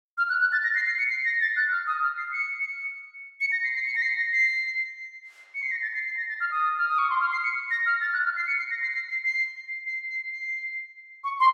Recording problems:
none

